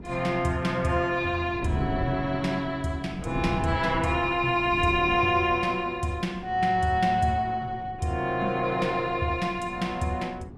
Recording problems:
wind on the microphone; below 290 Hz, SNR 13 dB

